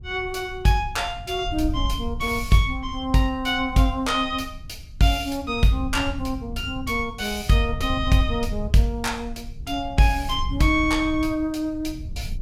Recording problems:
wind on the microphone; below 84 Hz, SNR 11 dB

